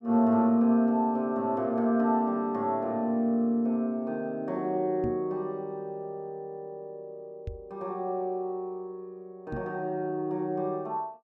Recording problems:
microphone bump; at 5 s, at 7.5 s and at 9.5 s; peak -2 dB vs average level

